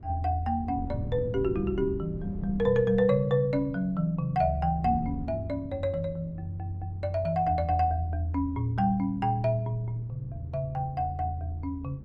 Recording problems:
wind on the microphone; below 180 Hz, SNR 13 dB

